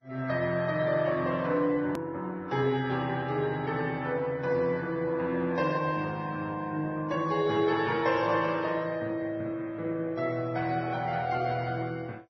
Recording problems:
lossy codec; MP2, then Vorbis, log-spectral distance 2 dB, nothing above 13.1 kHz
hard cut with a click; at 2 s

